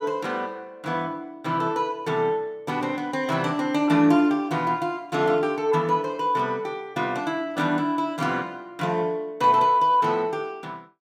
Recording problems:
none

